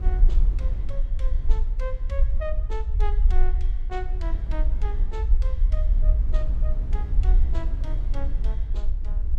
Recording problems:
rumble; below 48 Hz, SNR -13 dB
wind noise; below 120 Hz, SNR 0 dB

